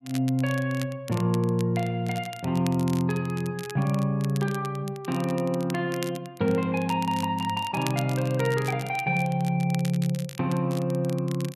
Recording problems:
crackle; vinyl, SNR 17 dB

